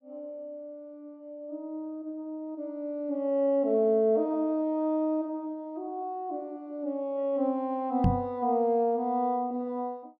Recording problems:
microphone thump; at 8 s; peak +7 dB vs average level

